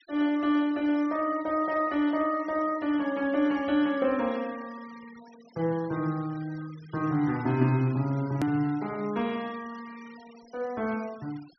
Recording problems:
treble cut off; nothing above 5.9 kHz
noise reduction artefacts; signal-to-artefact ratio 23 dB
hard cut with a click; at 8.5 s

